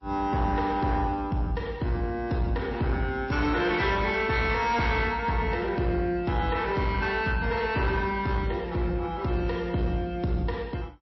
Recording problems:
lossy codec; MP3, log-spectral distance 2 dB, nothing above 5.7 kHz
distorted audio; soft clipping, signal-to-distortion ratio 10 dB

